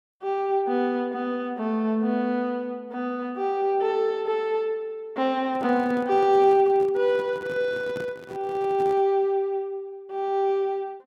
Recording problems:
microphone handling noise; from 5.5 to 9 s; peak -9 dB vs average level

